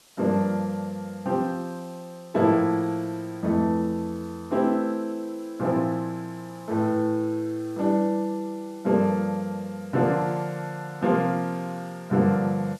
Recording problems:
hiss; SNR 27 dB

